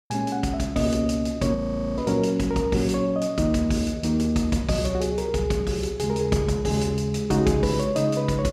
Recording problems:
frozen audio; at 1.5 s

